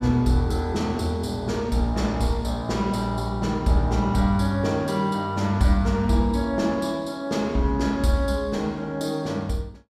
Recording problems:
none

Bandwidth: 15.5 kHz